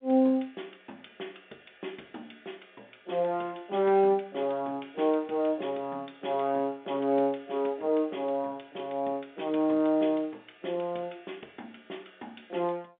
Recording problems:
phone line; 220 Hz to 3.6 kHz, G.711

